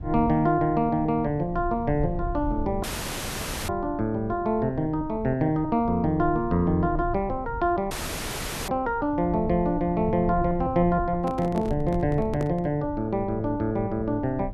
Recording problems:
rumble; below 110 Hz, SNR 12 dB
dropout; at 3 s for 1 s and at 8 s for 1 s
microphone handling noise; from 11 to 13 s; peak -2 dB vs average level

